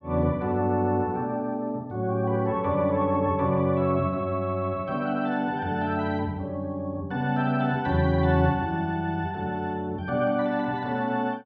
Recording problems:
none

